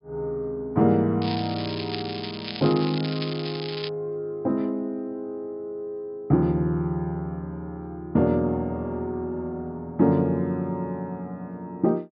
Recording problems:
treble missing; nothing above 5.5 kHz
crackle; from 1 to 4 s; loose cable, SNR 9 dB

